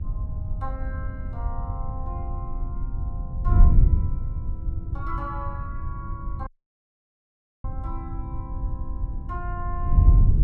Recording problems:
electrical hum; 50 Hz, harmonics up to 800 Hz, SNR 17 dB
wind on the microphone; below 88 Hz, SNR -11 dB
audio cutting out; at 6.5 s for 1 s

